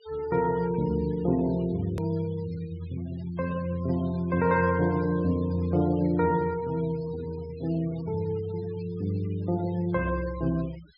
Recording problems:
low-pass filter; nothing above 5.5 kHz
noise reduction artefacts; signal-to-artefact ratio 22 dB
click at an edit; at 2 s

